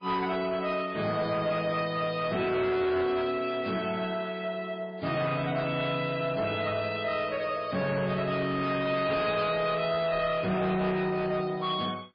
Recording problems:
lossy codec; MP2, then MP3, log-spectral distance 3 dB, nothing above 4.4 kHz
distorted audio; soft clipping, signal-to-distortion ratio 11 dB

